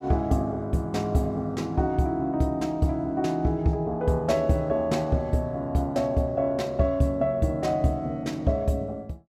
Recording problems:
none

